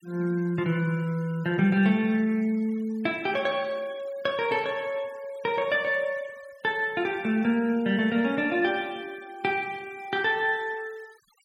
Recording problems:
noise reduction artefacts; signal-to-artefact ratio 26 dB

